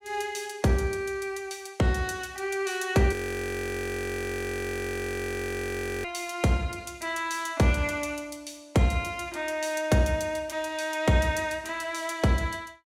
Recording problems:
frozen audio; at 3 s for 3 s

